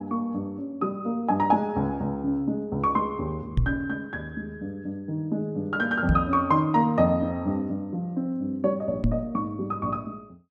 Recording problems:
microphone thump; at 3.5 s, at 6 s and at 9 s; peak +7 dB vs average level

